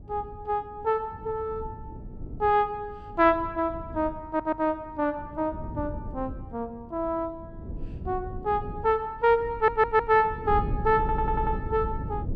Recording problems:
wind noise; below 160 Hz, SNR 11 dB
audio stuttering; at 4.5 s, at 9.5 s and at 11 s

